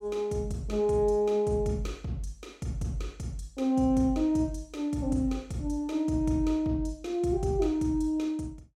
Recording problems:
none

